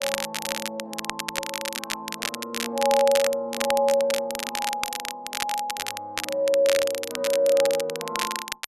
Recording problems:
crackle; vinyl, SNR 5 dB

